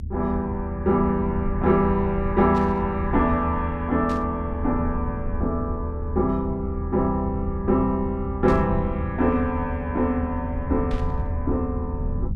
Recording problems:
low-frequency rumble; below 82 Hz, SNR 6 dB
burst of static; 4 times, first at 2.5 s; peak -13 dB vs average level

